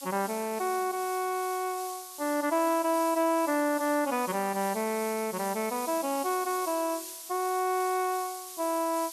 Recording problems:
hiss; slope +5 dB per octave, SNR 11 dB

